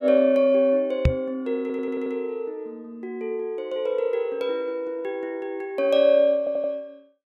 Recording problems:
microphone bump; at 1 s; peak +7 dB vs average level
stutter; at 1.5 s and at 6.5 s

